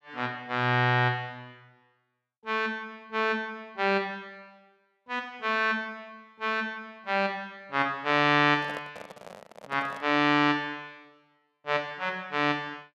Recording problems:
microphone handling noise; from 8.5 to 10 s; peak -8 dB vs average level

